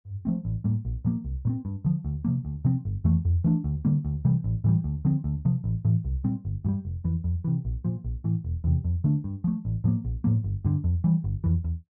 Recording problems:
none

